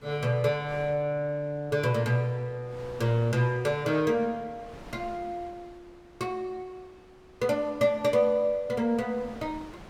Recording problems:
wind noise; below 1.1 kHz, SNR 23 dB

